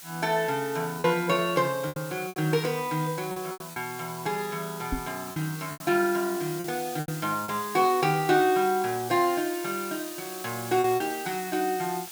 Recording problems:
hiss; slope +2 dB per octave, SNR 12 dB
packet loss; 6% of the sound replaced, filled with repeated pitch periods
microphone bump; at 5 s; peak +1 dB vs average level

